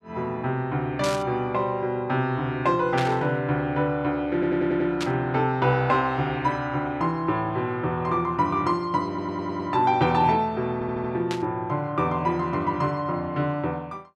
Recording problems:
burst of static; 4 times, first at 1 s; peak -1 dB vs average level
stutter; at 4.5 s, at 9 s and at 11 s

